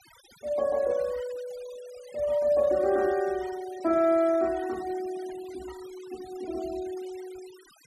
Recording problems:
denoising artefacts; signal-to-artefact ratio 22 dB

